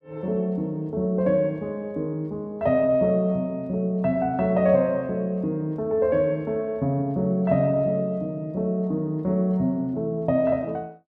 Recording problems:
none

